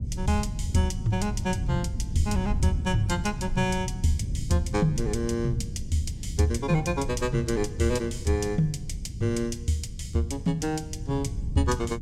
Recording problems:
rumble; below 120 Hz, SNR 6 dB

